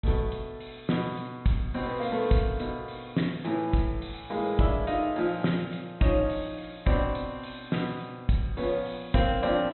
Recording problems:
low-pass filter; nothing above 4 kHz

